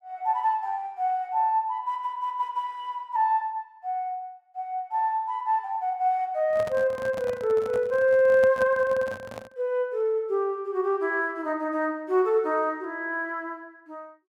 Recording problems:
handling noise; from 6.5 to 9.5 s; peak -6 dB vs average level

